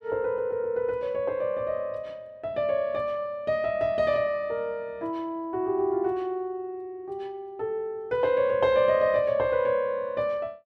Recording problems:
none

